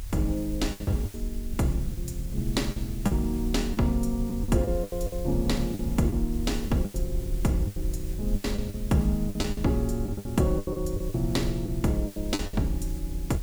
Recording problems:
hiss; slope 0 dB per octave, SNR 17 dB
low-frequency rumble; below 60 Hz, strongest tone 38 Hz, SNR 6 dB
wind noise; below 310 Hz, SNR 20 dB
lost packets; 12% of the sound replaced, filled with the last packet

